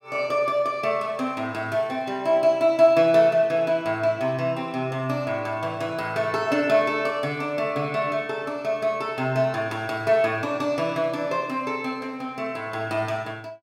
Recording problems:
none

